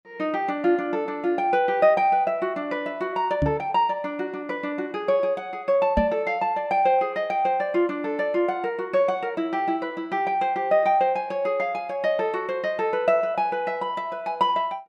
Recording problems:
microphone thump; at 3.5 s and at 6 s; peak +3 dB vs average level

